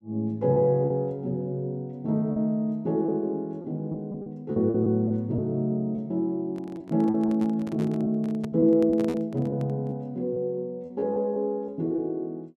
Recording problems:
packet loss; 7% of the sound replaced, filled with repeated pitch periods
microphone handling noise; from 6.5 to 10 s; peak -6 dB vs average level

